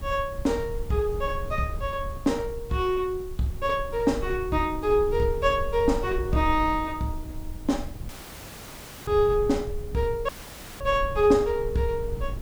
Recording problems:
background hiss; slope -2 dB per octave, SNR 25 dB
low-frequency rumble; below 76 Hz, SNR 11 dB
dropout; at 8 s for 1 s and at 10 s for 0.5 s

